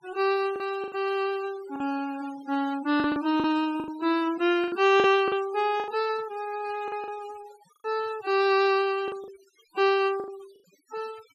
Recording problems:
denoising artefacts; signal-to-artefact ratio 20 dB
packet loss; 8% of the sound replaced, filled with the last packet

